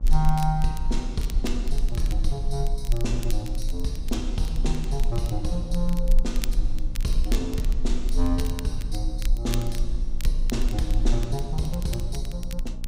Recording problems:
hum; 60 Hz, harmonics up to 840 Hz, SNR 11 dB
rumble; below 36 Hz, strongest tone 22 Hz, SNR 0 dB
crackle; vinyl, SNR 13 dB

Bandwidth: 15.5 kHz